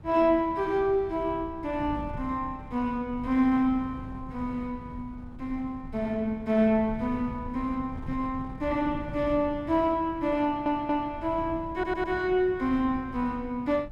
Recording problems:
wind on the microphone; below 160 Hz, SNR 15 dB
audio stuttering; at 10 s and at 12 s

